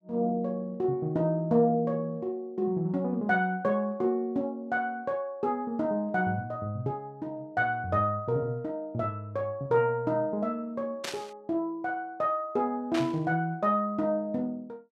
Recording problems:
static burst; at 11 s and at 13 s; peak -1 dB vs average level

